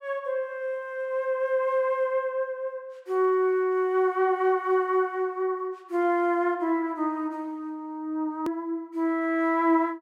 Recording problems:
hard cut with a click; at 8.5 s

